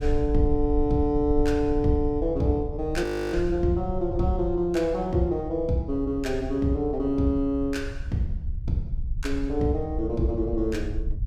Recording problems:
rumble; below 68 Hz, SNR 8 dB
audio freezing; at 3 s

